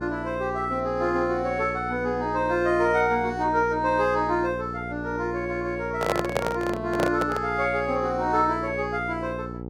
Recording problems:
hum; 60 Hz, harmonics up to 960 Hz, SNR 10 dB
microphone handling noise; from 6 to 7.5 s; peak +4 dB vs average level

